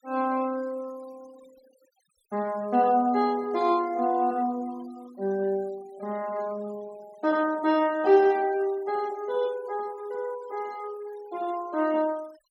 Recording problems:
denoising artefacts; signal-to-artefact ratio 25 dB

